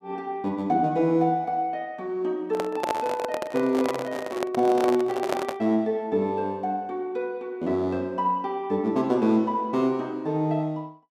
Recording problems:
microphone handling noise; from 2.5 to 5.5 s; peak +2 dB vs average level

